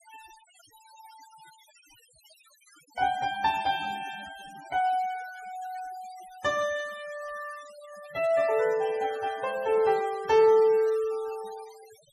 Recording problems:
noise reduction artefacts; signal-to-artefact ratio 21 dB

